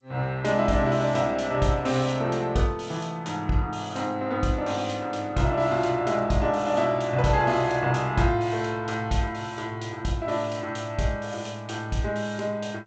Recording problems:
codec artefacts; G.722, log-spectral distance 2 dB, nothing above 7.6 kHz

